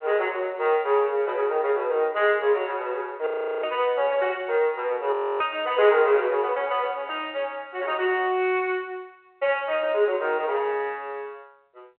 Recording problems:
phone line; 320 Hz to 3.1 kHz, G.726
audio freezing; at 3.5 s and at 5 s

